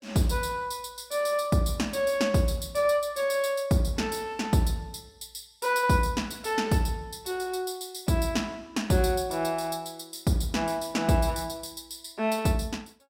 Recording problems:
none

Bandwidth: 16 kHz